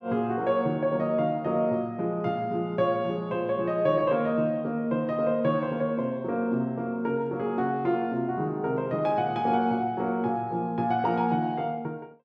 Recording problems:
none

